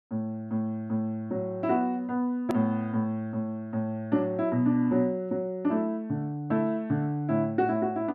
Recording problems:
click at an edit; at 2.5 s

